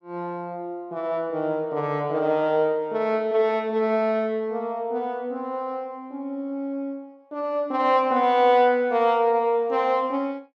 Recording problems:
none

